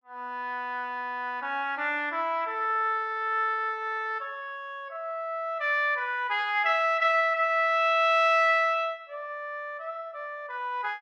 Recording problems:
none

